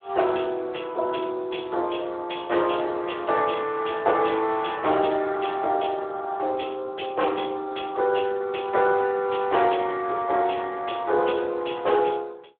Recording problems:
phone line; 320 Hz to 3.5 kHz, Speex

